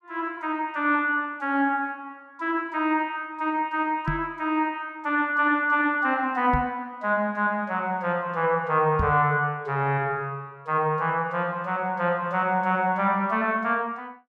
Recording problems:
microphone bump; at 4 s, at 6.5 s and at 9 s; peak +1 dB vs average level

